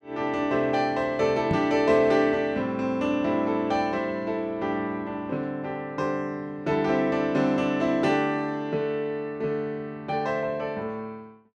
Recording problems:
microphone bump; at 1.5 s; peak +3 dB vs average level

